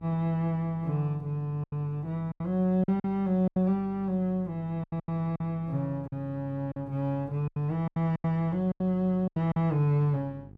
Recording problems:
electrical hum; 50 Hz, harmonics up to 500 Hz, SNR 21 dB
lost packets; 10% of the sound replaced, filled with silence

